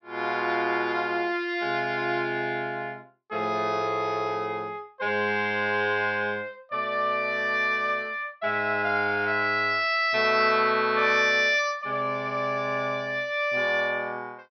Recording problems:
low-pass filter; nothing above 5.9 kHz

